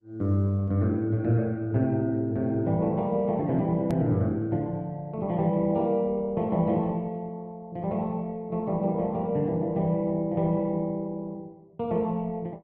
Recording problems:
lossy compression; Opus, log-spectral distance 2 dB, nothing above 13.1 kHz
hard cut with a click; at 4 s

